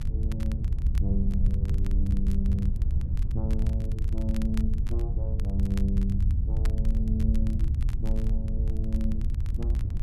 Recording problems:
mains hum; 60 Hz, harmonics up to 720 Hz, SNR 28 dB
low-frequency rumble; below 74 Hz, strongest tone 70 Hz, SNR 1 dB
wind on the microphone; below 80 Hz, SNR -6 dB
crackle; vinyl, SNR 17 dB

